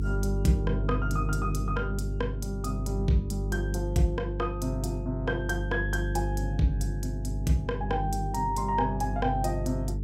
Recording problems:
hum; 50 Hz, harmonics up to 450 Hz, SNR 2 dB

